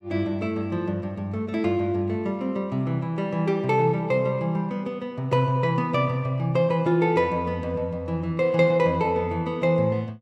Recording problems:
none

